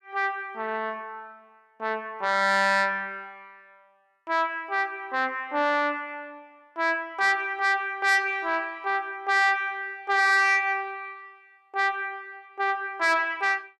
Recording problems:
distortion; soft clipping, signal-to-distortion ratio 10 dB

